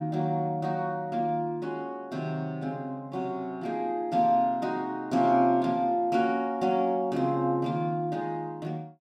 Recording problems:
none

